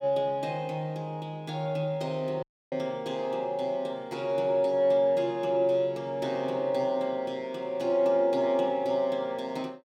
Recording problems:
audio cutting out; at 2.5 s

